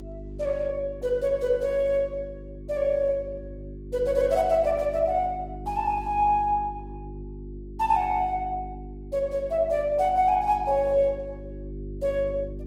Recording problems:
codec artefacts; Opus, log-spectral distance 2 dB, nothing above 19.5 kHz
electrical hum; 50 Hz, harmonics up to 400 Hz, SNR 14 dB

